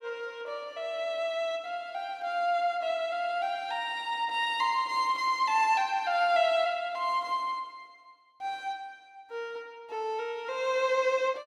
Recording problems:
none

